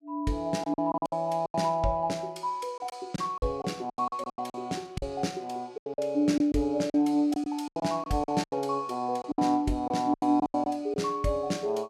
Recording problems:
lost packets; 13% of the sound replaced, filled with silence

